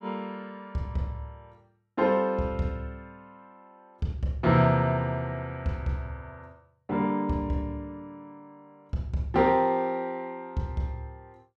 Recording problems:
none

